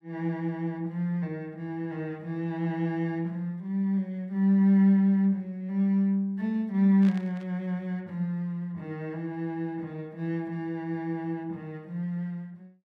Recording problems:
burst of static; at 7 s; peak -13 dB vs average level

